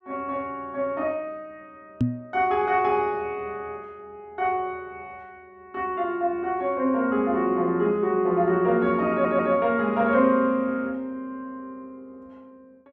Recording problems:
microphone bump; at 2 s; peak +5 dB vs average level
stutter; at 9 s

